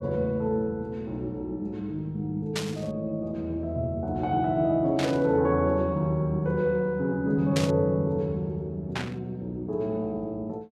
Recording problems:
static burst; 4 times, first at 2.5 s; peak +1 dB vs average level

